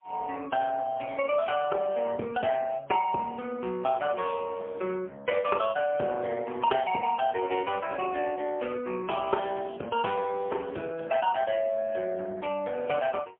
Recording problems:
phone line; 280 Hz to 3.3 kHz, AMR-NB, then MP3

